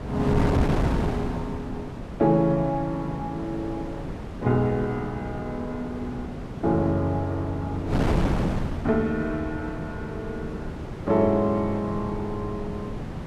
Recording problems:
wind on the microphone; below 410 Hz, SNR 4 dB

